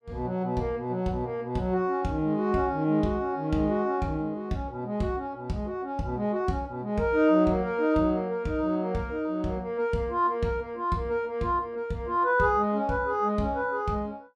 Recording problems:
none

